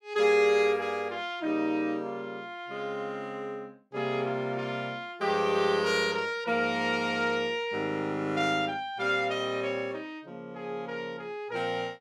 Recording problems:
none

